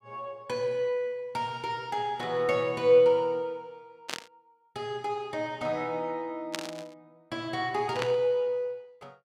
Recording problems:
burst of static; at 4 s, at 6.5 s and at 8 s; peak +1 dB vs average level

